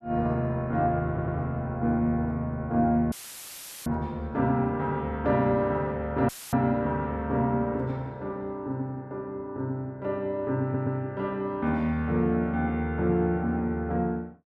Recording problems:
audio stuttering; at 1 s and at 11 s
dropout; at 3 s for 0.5 s and at 6.5 s; filled with static

